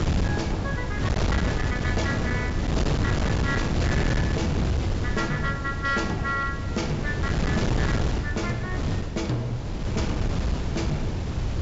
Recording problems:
low-pass filter; nothing above 8 kHz
distorted audio; hard clipping, uneven, signal-to-distortion ratio 11 dB
wind on the microphone; below 290 Hz, SNR -3 dB

